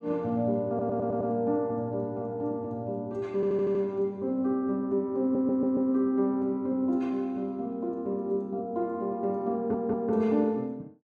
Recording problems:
audio stuttering; 4 times, first at 0.5 s

